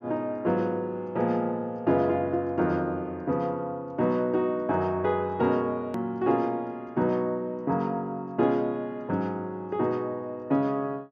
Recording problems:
treble missing; nothing above 7.3 kHz
hard cut with a click; at 6 s

